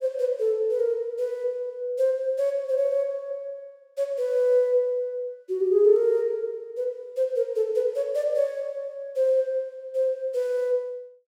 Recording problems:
none

